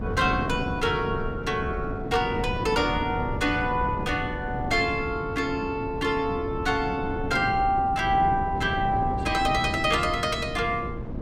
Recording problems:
wind noise; below 300 Hz, SNR 7 dB

